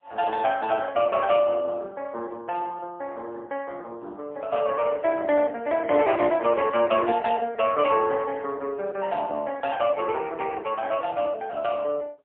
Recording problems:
phone line; 300 Hz to 3.5 kHz, AMR-NB, then MP3

